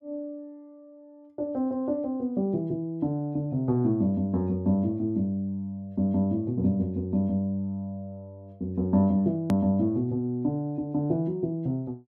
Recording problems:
edit click; at 9.5 s

